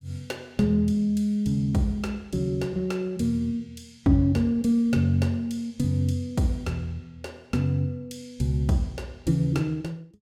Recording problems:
none

